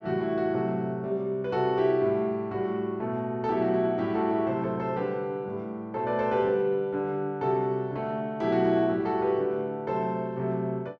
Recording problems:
none

